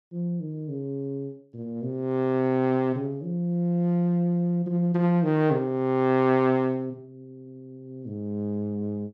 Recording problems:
none

